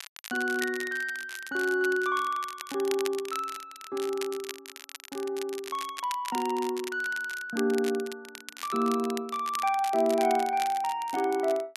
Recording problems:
crackle; vinyl, SNR 13 dB

